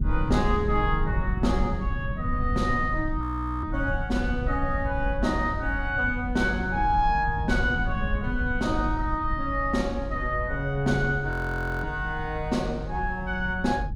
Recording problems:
low-frequency rumble; below 96 Hz, SNR 5 dB
frozen audio; at 3 s and at 11 s for 0.5 s

